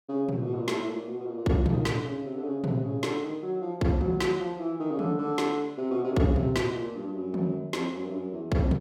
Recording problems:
none

